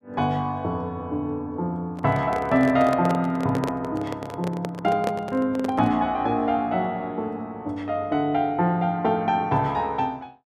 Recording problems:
handling noise; from 2 to 6 s; peak 0 dB vs average level

